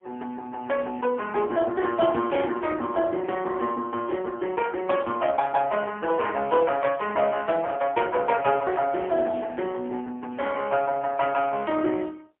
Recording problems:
phone line; 280 Hz to 3.3 kHz, AMR-NB, then MP3

